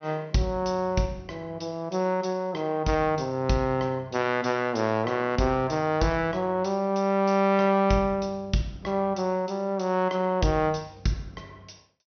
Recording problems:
low-pass filter; nothing above 6.2 kHz

